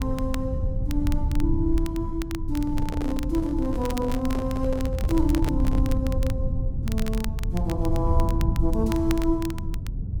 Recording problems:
rumble; below 94 Hz, SNR 0 dB
crackle; vinyl, SNR 14 dB
handling noise; from 2.5 to 6 s; peak -2 dB vs average level

